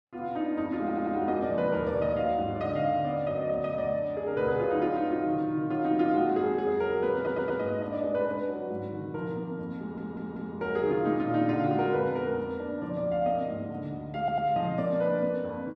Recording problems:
audio stuttering; 4 times, first at 1 s

